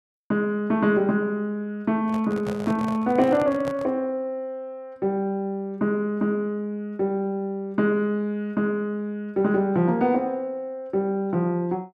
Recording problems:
microphone handling noise; from 2 to 4 s; peak -5 dB vs average level

